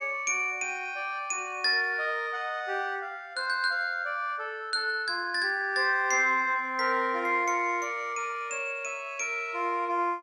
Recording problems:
none

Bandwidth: 12.5 kHz